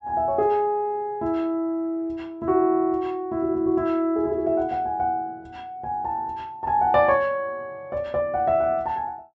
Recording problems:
low-pass filter; nothing above 8 kHz

